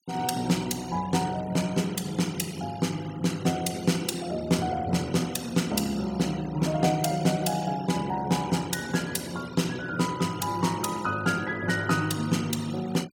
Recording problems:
denoising artefacts; signal-to-artefact ratio 18 dB

